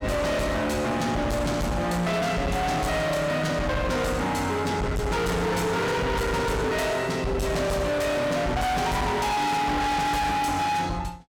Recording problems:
distorted audio; hard clipping, signal-to-distortion ratio 6 dB

